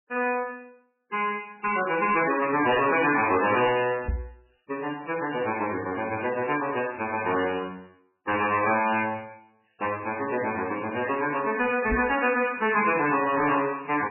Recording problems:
codec artefacts; AAC, then MP3, log-spectral distance 8 dB, nothing above 2.5 kHz
distorted audio; soft clipping, signal-to-distortion ratio 10 dB
microphone bump; at 4 s and at 12 s; peak +2 dB vs average level

